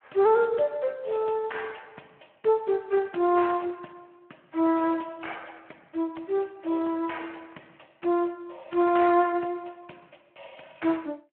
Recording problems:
phone line; 220 Hz to 3.2 kHz, Speex

